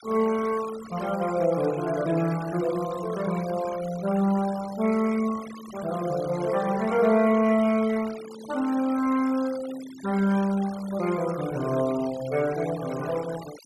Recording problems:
denoising artefacts; signal-to-artefact ratio 17 dB

